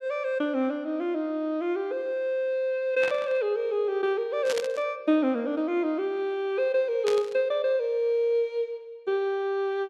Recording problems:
static burst; at 3 s, at 4.5 s and at 7 s; peak -3 dB vs average level

